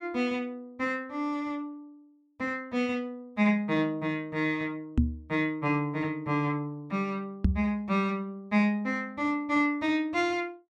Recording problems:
microphone bump; at 5 s and at 7.5 s; peak +9 dB vs average level

